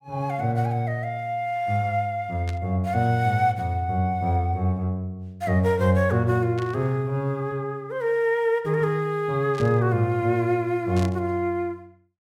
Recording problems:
static burst; 4 times, first at 2.5 s; peak -10 dB vs average level

